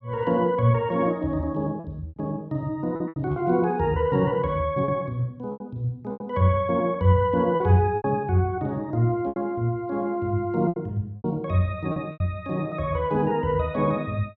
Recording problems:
lost packets; 7% of the sound replaced, filled with repeated pitch periods

